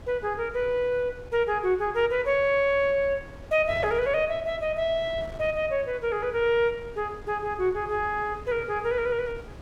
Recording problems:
wind on the microphone; below 440 Hz, SNR 18 dB

